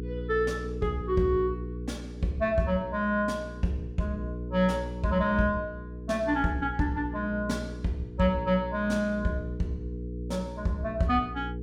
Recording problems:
hum; 60 Hz, harmonics up to 480 Hz, SNR 9 dB

